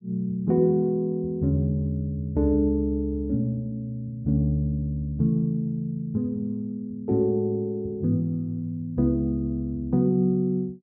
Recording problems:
none

